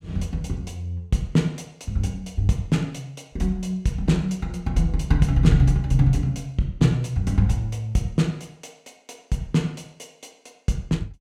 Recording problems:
none

